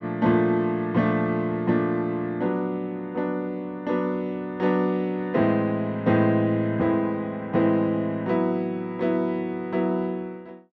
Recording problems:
none

